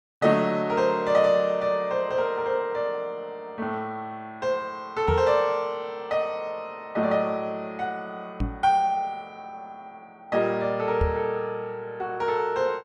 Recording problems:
microphone thump; at 5 s, at 8.5 s and at 11 s; peak +2 dB vs average level

